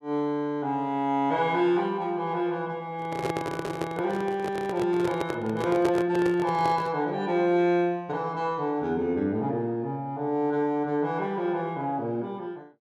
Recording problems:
microphone handling noise; from 3 to 7 s; peak +2 dB vs average level

